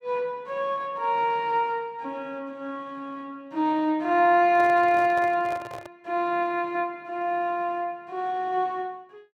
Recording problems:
handling noise; from 4.5 to 6 s; peak -9 dB vs average level

